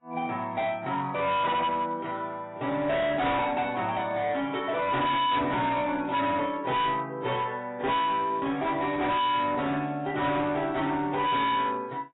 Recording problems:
lossy codec; AAC, log-spectral distance 3 dB
distortion; hard clipping, signal-to-distortion ratio 6 dB

